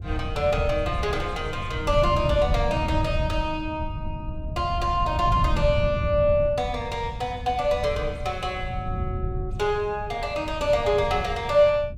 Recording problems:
wind noise; below 120 Hz, SNR 6 dB

